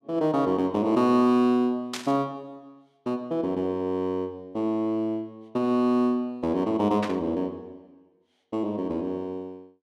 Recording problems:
static burst; at 2 s and at 7 s; peak -2 dB vs average level

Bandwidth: 14 kHz